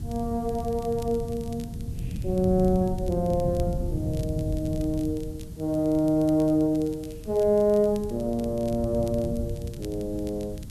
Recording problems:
hiss; SNR 27 dB
wind on the microphone; below 150 Hz, SNR 8 dB
crackle; vinyl, SNR 25 dB

